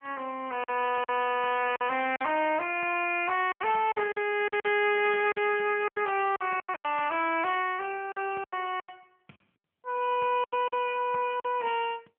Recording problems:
telephone audio; 220 Hz to 3.2 kHz, AMR-NB
lost packets; 10% of the sound replaced, filled with silence

